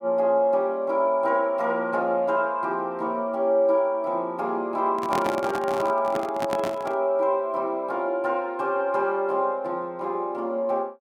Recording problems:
microphone handling noise; from 5 to 7 s; peak -1 dB vs average level

